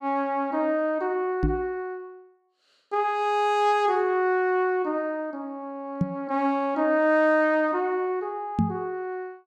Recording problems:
microphone thump; at 1.5 s, at 6 s and at 8.5 s; peak +5 dB vs average level

